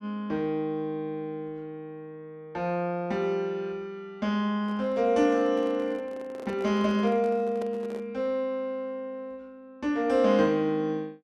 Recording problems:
microphone handling noise; from 4.5 to 8 s; peak -8 dB vs average level

